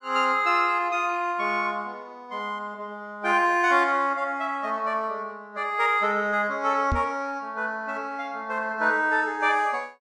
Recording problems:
microphone thump; at 7 s; peak +1 dB vs average level

